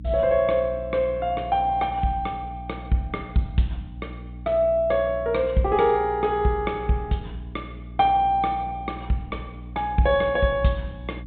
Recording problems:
treble missing; nothing above 4 kHz
hum; 60 Hz, harmonics up to 300 Hz, SNR 15 dB

